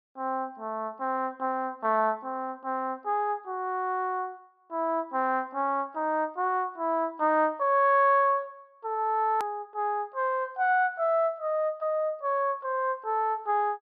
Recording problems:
treble cut off; nothing above 5.5 kHz
hard cut with a click; at 9.5 s

